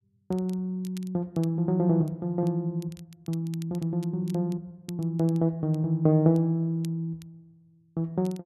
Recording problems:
crackling; vinyl, SNR 27 dB

